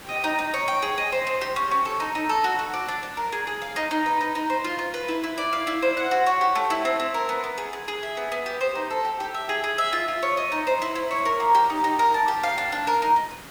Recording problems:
background hiss; slope -3 dB per octave, SNR 19 dB

